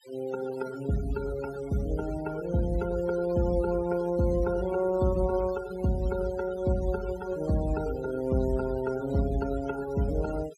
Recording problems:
denoising artefacts; signal-to-artefact ratio 17 dB

